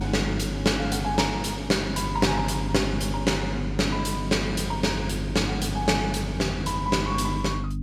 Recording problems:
hum; 50 Hz, harmonics up to 300 Hz, SNR 6 dB

